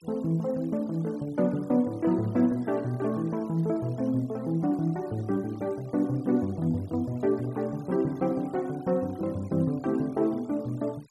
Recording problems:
denoising artefacts; signal-to-artefact ratio 27 dB

